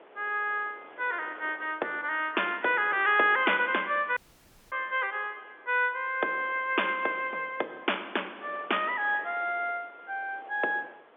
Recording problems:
telephone audio; 300 Hz to 3.5 kHz, G.711
wind on the microphone; below 1.4 kHz, SNR 23 dB
dropout; at 4 s for 0.5 s

